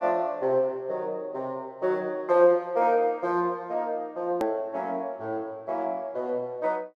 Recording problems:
edit click; at 4.5 s

